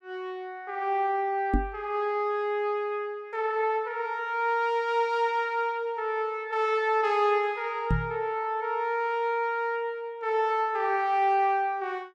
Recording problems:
microphone thump; at 1.5 s and at 8 s; peak +5 dB vs average level

